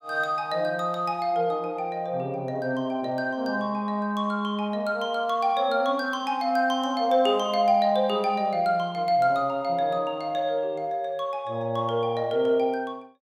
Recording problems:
none

